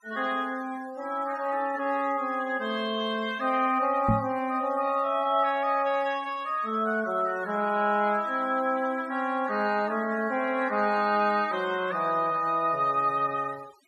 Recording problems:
noise reduction artefacts; signal-to-artefact ratio 23 dB
microphone bump; at 4 s; peak +5 dB vs average level

